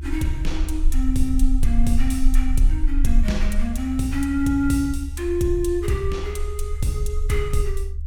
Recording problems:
rumble; below 42 Hz, strongest tone 22 Hz, SNR 2 dB

